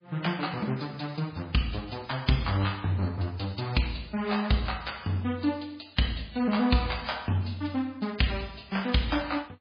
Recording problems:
lossy codec; MP3, log-spectral distance 7 dB, nothing above 5 kHz

